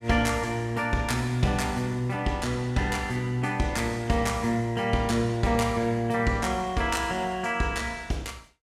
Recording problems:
none

